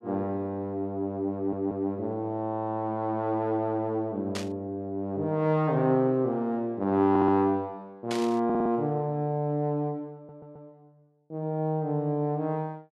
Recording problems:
stutter; 4 times, first at 1.5 s
static burst; at 4.5 s and at 8 s; peak -3 dB vs average level

